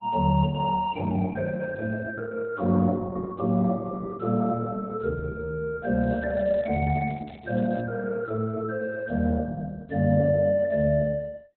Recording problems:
lossy codec; Opus, log-spectral distance 3 dB, nothing above 4 kHz
crackle; from 6 to 8 s; loose cable, SNR 29 dB

